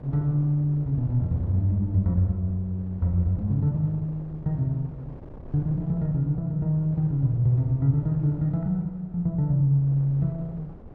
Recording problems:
wind on the microphone; below 330 Hz, SNR 20 dB

